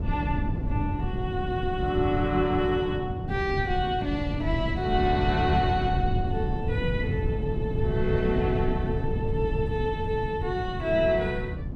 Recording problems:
wind noise; below 170 Hz, SNR 2 dB

